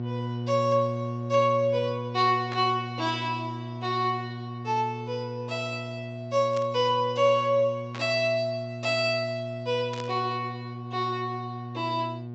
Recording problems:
low-pass filter; nothing above 8 kHz
hum; 60 Hz, harmonics up to 720 Hz, SNR 9 dB
burst of static; 4 times, first at 2.5 s; peak -8 dB vs average level

